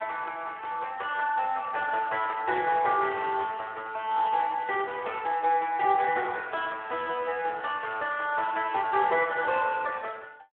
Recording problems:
phone line; 300 Hz to 3.1 kHz, Speex

